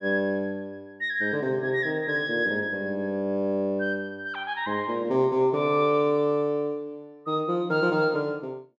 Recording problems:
none

